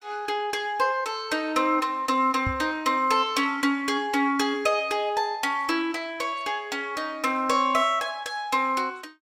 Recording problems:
knock on the microphone; at 2.5 s; peak -1 dB vs average level

